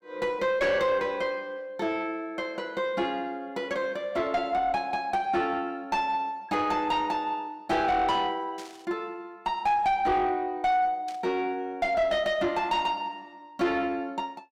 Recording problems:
distorted audio; soft clipping, signal-to-distortion ratio 10 dB
burst of static; at 8.5 s and at 11 s; peak -12 dB vs average level

